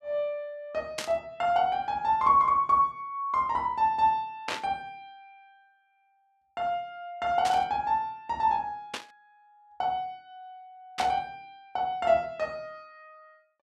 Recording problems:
static burst; 5 times, first at 1 s; peak -1 dB vs average level

